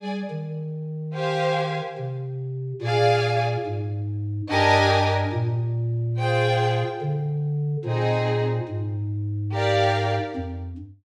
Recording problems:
none

